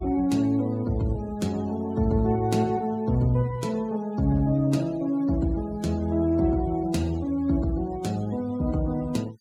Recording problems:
denoising artefacts; signal-to-artefact ratio 23 dB

